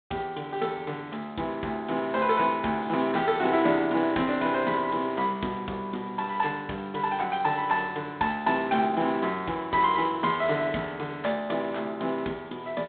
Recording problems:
telephone audio; 130 Hz to 3.9 kHz, G.726

